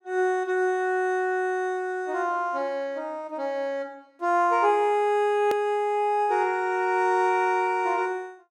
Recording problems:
click at an edit; at 5.5 s

